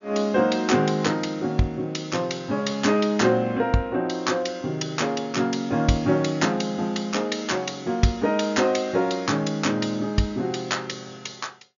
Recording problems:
treble cut off; nothing above 7 kHz

